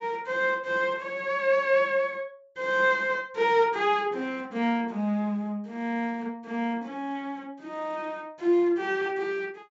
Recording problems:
treble cut off; nothing above 8 kHz

